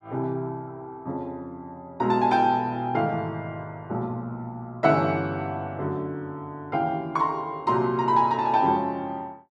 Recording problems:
none

